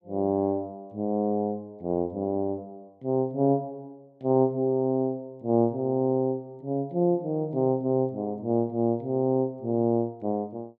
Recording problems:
none

